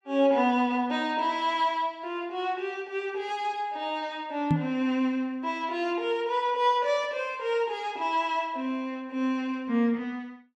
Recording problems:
knock on the microphone; at 4.5 s; peak +6 dB vs average level

